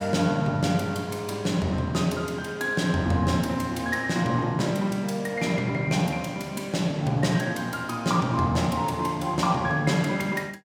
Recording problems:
none

